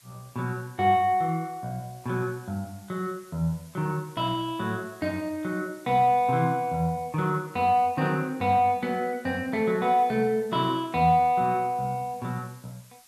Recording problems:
background hiss; slope +2 dB per octave, SNR 27 dB

